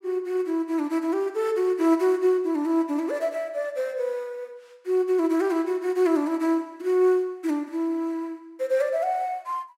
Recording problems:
none

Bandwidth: 16 kHz